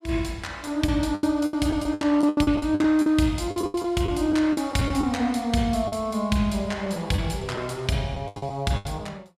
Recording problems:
packet loss; 13% of the sound replaced, filled with the last packet

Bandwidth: 15 kHz